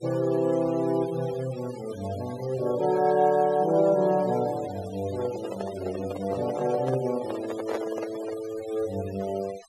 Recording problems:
denoising artefacts; signal-to-artefact ratio 18 dB
handling noise; from 5 to 8.5 s; peak 0 dB vs average level

